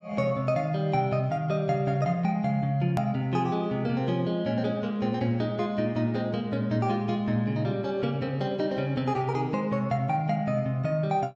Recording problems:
click at an edit; at 3 s

